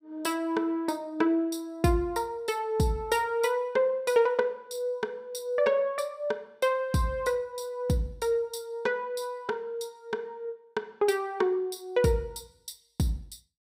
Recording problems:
none

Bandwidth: 15.5 kHz